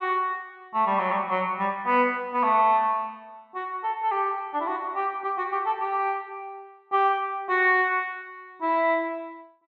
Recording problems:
none

